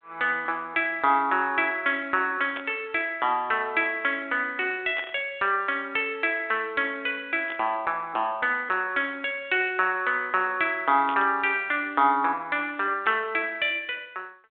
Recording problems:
telephone audio; 240 Hz to 3.6 kHz, G.726
static burst; 5 times, first at 2.5 s; peak -7 dB vs average level

